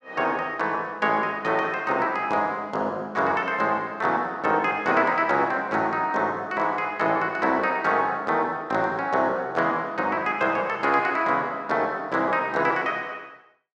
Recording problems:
none

